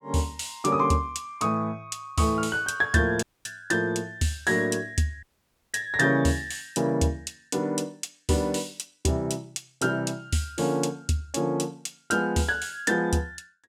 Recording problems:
audio cutting out; at 3 s and at 5 s for 0.5 s

